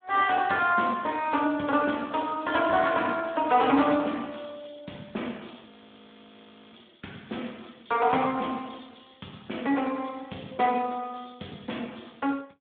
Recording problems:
phone line; 190 Hz to 3.5 kHz, Speex
audio freezing; at 5.5 s for 1 s

